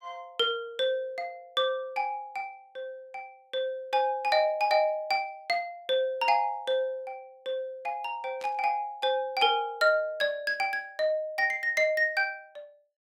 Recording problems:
burst of static; at 8.5 s; peak -14 dB vs average level

